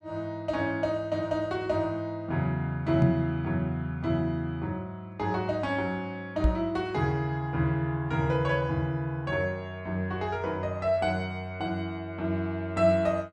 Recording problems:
knock on the microphone; at 3 s and at 6.5 s; peak +8 dB vs average level

